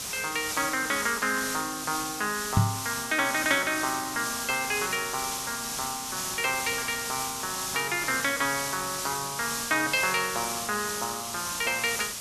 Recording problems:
background hiss; SNR 3 dB
knock on the microphone; at 2.5 s; peak +9 dB vs average level

